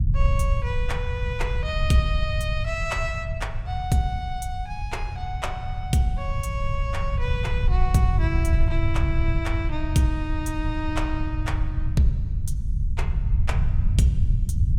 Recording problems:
rumble; below 92 Hz, SNR -2 dB

